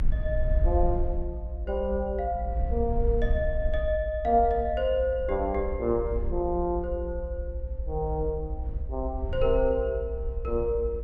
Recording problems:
rumble; below 64 Hz, SNR 4 dB

